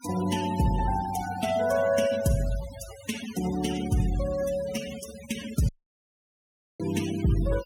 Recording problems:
noise reduction artefacts; signal-to-artefact ratio 12 dB
audio cutting out; at 5.5 s for 1 s

